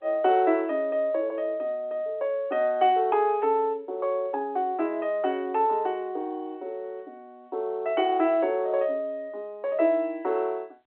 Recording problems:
telephone audio; 280 Hz to 3.4 kHz, G.711

